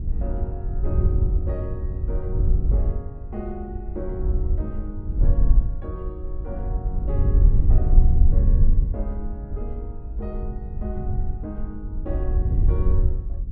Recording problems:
wind on the microphone; below 70 Hz, SNR -12 dB

